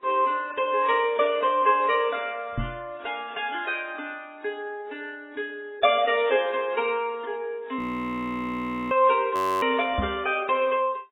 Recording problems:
lossy compression; MP3, then AAC, log-spectral distance 2 dB, nothing above 19.5 kHz
microphone thump; at 2.5 s and at 10 s; peak 0 dB vs average level
frozen audio; at 8 s for 1 s and at 9.5 s

